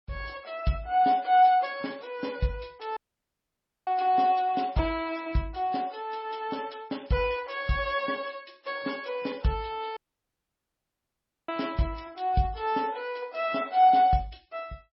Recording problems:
codec artefacts; MP3, log-spectral distance 3 dB, nothing above 5.5 kHz
audio cutting out; at 3 s for 1 s and at 10 s for 1.5 s

